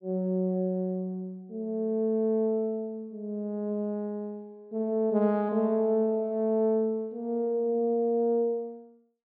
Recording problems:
treble missing; nothing above 5.5 kHz

